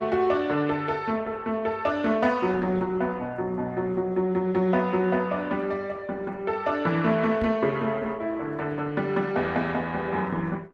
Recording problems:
lossy codec; Opus, log-spectral distance 3 dB
microphone thump; at 7.5 s; peak -1 dB vs average level

